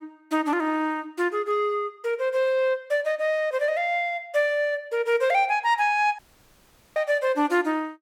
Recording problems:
audio cutting out; at 6 s for 1 s

